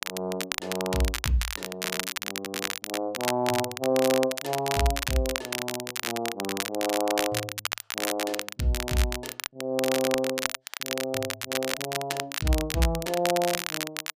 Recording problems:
crackle; vinyl, SNR 2 dB

